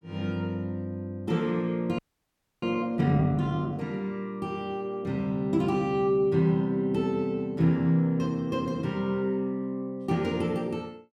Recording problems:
audio freezing; at 2 s for 0.5 s

